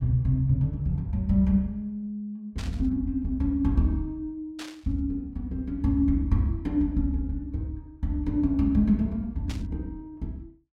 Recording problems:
static burst; at 2.5 s, at 4.5 s and at 9.5 s; peak -9 dB vs average level

